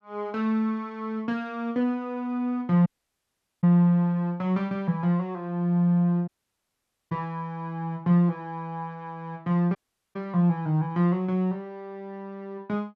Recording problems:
dropout; at 3 s for 1 s, at 6.5 s for 1 s and at 10 s

